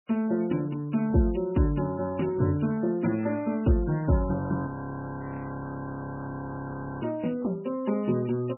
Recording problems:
lossy compression; MP3, log-spectral distance 4 dB, nothing above 2.9 kHz
audio freezing; at 4.5 s for 2.5 s

